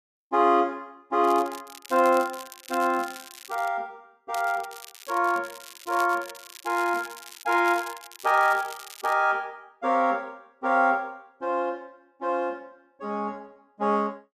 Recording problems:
crackle; from 1 to 3.5 s and from 4.5 to 9 s; loose cable, SNR 17 dB

